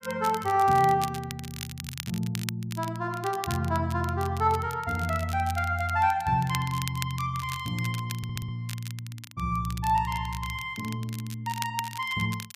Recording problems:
crackle; vinyl, SNR 13 dB
audio stuttering; at 8 s

